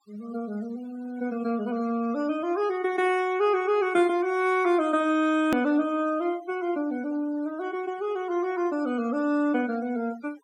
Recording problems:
denoising artefacts; signal-to-artefact ratio 23 dB
click at an edit; at 5.5 s

